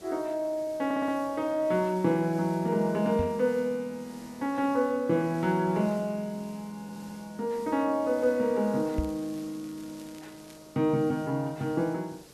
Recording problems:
hiss; SNR 23 dB
stutter; at 1 s and at 7 s
microphone bump; at 3 s and at 9 s; peak +1 dB vs average level
crackling; from 9 to 11 s; loose cable, SNR 27 dB

